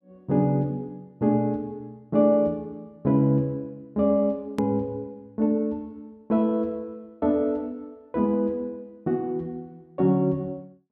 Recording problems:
edit click; at 4.5 s

